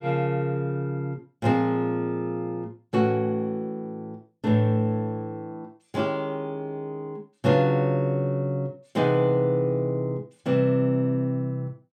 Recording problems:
none

